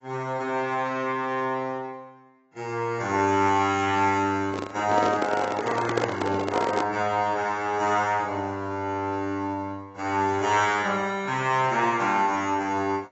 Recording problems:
lossy compression; AAC, log-spectral distance 2 dB, nothing above 7.3 kHz
handling noise; from 4.5 to 7 s; peak +3 dB vs average level

